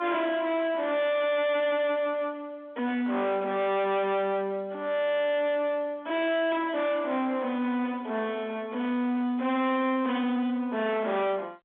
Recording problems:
telephone audio; 220 Hz to 3.8 kHz, G.711
distortion; soft clipping, signal-to-distortion ratio 7 dB

